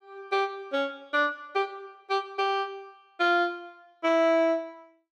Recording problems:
none

